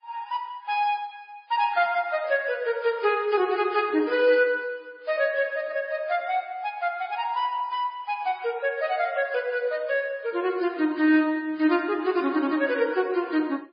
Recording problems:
lossy compression; MP3, then MP3, log-spectral distance 2 dB, nothing above 5 kHz

